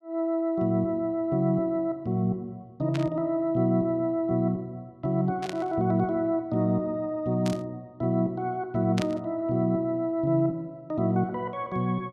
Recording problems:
static burst; 4 times, first at 3 s; peak -4 dB vs average level

